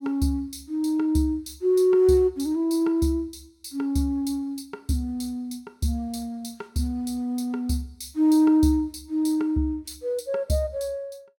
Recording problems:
none

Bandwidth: 17 kHz